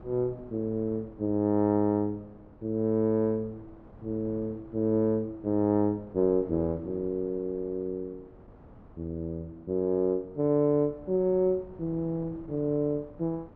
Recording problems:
wind on the microphone; below 470 Hz, SNR 23 dB

